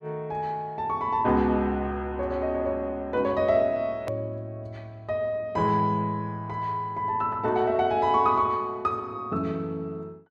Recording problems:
hard cut with a click; at 4 s

